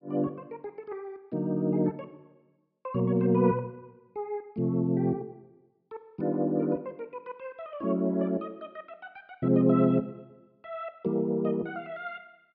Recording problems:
treble missing; nothing above 5.5 kHz

